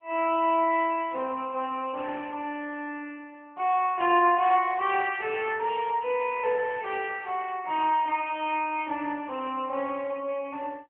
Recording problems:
telephone audio; 300 Hz to 3.1 kHz, AMR-NB

